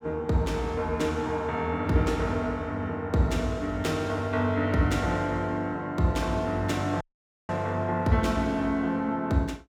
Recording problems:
audio cutting out; at 7 s

